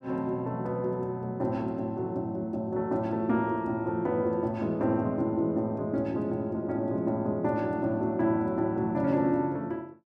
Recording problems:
none

